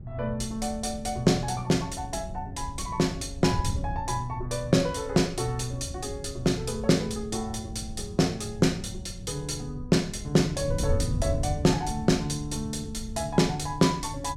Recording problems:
wind on the microphone; below 120 Hz, SNR 9 dB

